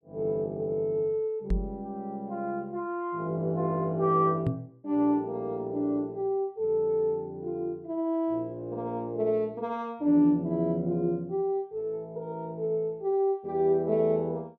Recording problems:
microphone bump; at 1.5 s and at 4.5 s; peak +4 dB vs average level

